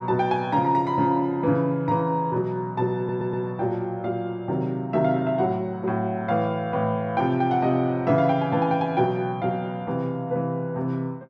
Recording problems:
stutter; at 3 s

